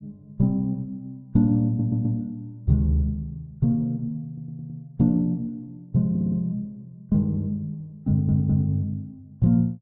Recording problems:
stutter; 4 times, first at 1.5 s

